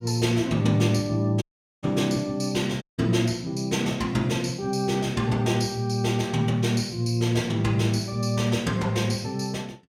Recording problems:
dropout; at 1.5 s and at 3 s

